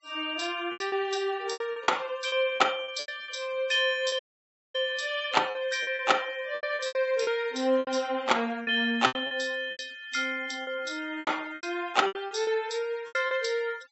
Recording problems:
low-pass filter; nothing above 7.7 kHz
noise reduction artefacts; signal-to-artefact ratio 23 dB
packet loss; 13% of the sound replaced, filled with repeated pitch periods
audio cutting out; at 4 s for 0.5 s

